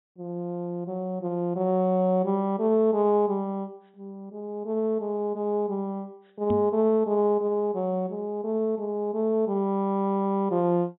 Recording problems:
low-pass filter; nothing above 3.8 kHz
microphone thump; at 6.5 s; peak -1 dB vs average level

